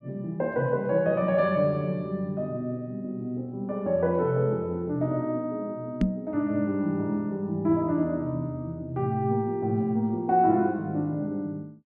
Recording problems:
microphone bump; at 6 s; peak +6 dB vs average level

